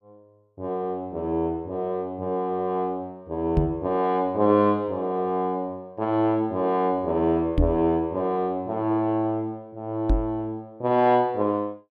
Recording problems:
microphone bump; at 3.5 s, at 7.5 s and at 10 s; peak +6 dB vs average level

